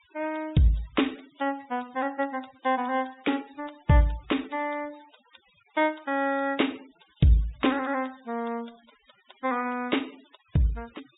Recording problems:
treble missing; nothing above 4 kHz
noise reduction artefacts; signal-to-artefact ratio 25 dB

